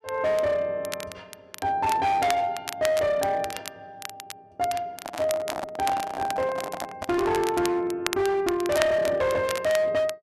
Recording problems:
distorted audio; hard clipping, signal-to-distortion ratio 10 dB
crackling; vinyl, SNR 12 dB
handling noise; from 5 to 7.5 s; peak -2 dB vs average level

